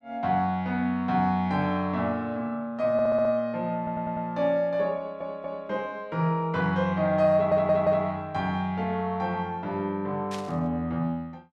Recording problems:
audio stuttering; 4 times, first at 3 s
static burst; at 10 s; peak -8 dB vs average level

